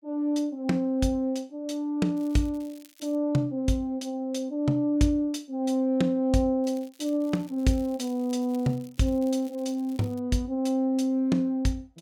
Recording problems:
crackling; from 2 to 3 s and from 6.5 to 10 s; loose cable, SNR 27 dB

